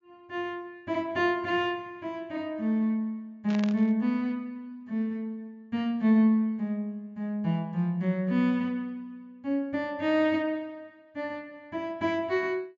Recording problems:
treble missing; nothing above 7.3 kHz
burst of static; at 3.5 s; peak -5 dB vs average level

